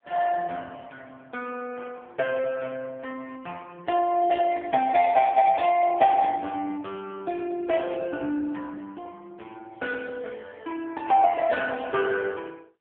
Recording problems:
telephone audio; 170 Hz to 2.9 kHz, AMR-NB

